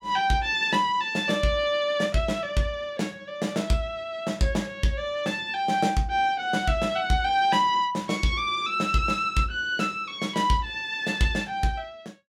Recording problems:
none

